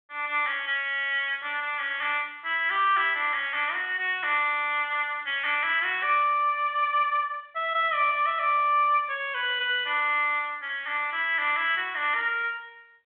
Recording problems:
telephone audio; 340 Hz to 3.5 kHz, G.726

